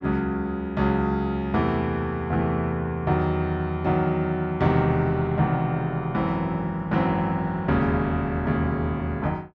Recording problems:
none

